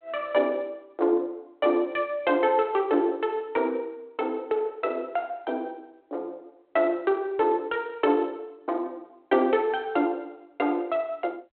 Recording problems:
telephone audio; 260 Hz to 3.3 kHz, G.726

